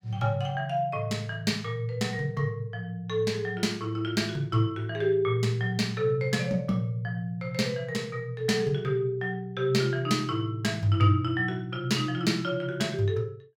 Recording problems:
none

